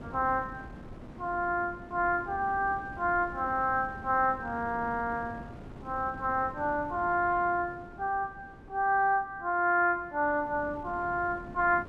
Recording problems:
wind on the microphone; below 400 Hz, SNR 17 dB

